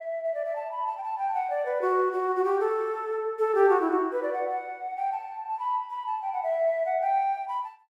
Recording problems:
none

